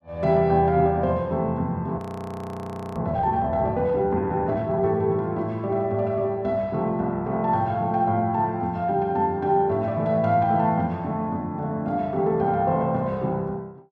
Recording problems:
audio freezing; at 2 s for 1 s

